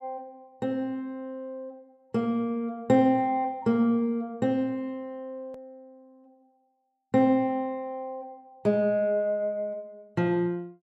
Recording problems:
hard cut with a click; at 5.5 s

